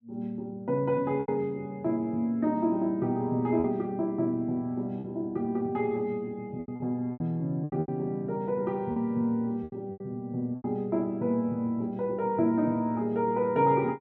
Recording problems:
packet loss; 6% of the sound replaced, filled with repeated pitch periods

